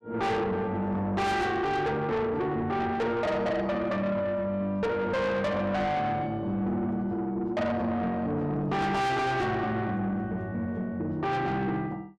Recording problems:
distortion; soft clipping, signal-to-distortion ratio 7 dB

